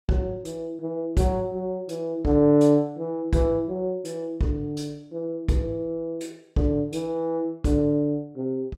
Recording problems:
none

